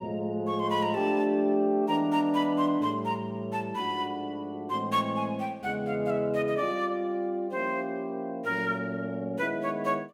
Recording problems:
none

